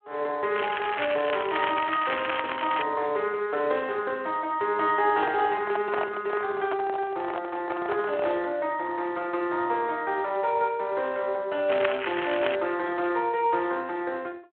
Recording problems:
phone line; 300 Hz to 3.2 kHz, Speex
crackling; from 0.5 to 3 s and at 12 s; loose cable, SNR 5 dB
handling noise; from 5 to 8.5 s; peak 0 dB vs average level

